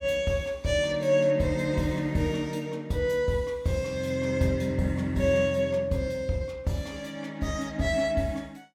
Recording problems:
none

